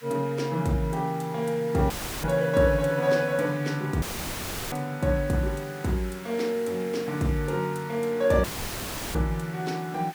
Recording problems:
background hiss; SNR 19 dB
dropout; at 2 s, at 4 s for 0.5 s and at 8.5 s for 0.5 s; filled with static

